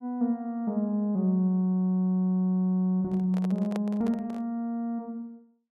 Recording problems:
handling noise; from 3 to 4.5 s; peak -5 dB vs average level

